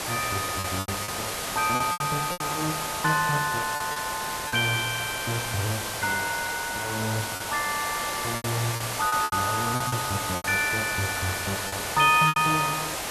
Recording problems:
hiss; SNR 3 dB
lost packets; 8% of the sound replaced, filled with repeated pitch periods

